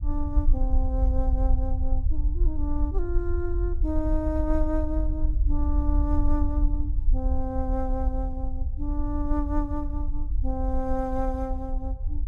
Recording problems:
low-frequency rumble; below 56 Hz, SNR -4 dB

